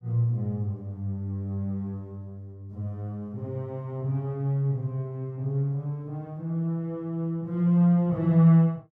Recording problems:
none

